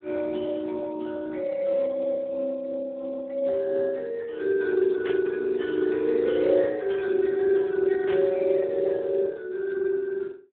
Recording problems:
phone line; 260 Hz to 3 kHz, Speex
burst of static; at 5 s and at 8 s; peak -8 dB vs average level

